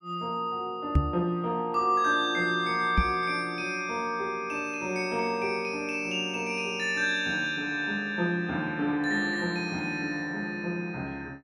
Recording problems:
microphone bump; at 1 s and at 3 s; peak +9 dB vs average level

